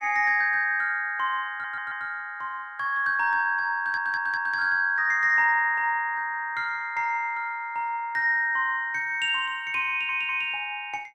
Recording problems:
audio stuttering; at 1.5 s, at 4 s and at 10 s

